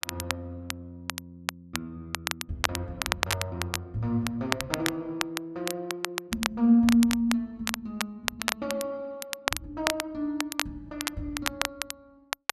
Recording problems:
crackle; vinyl, SNR 3 dB

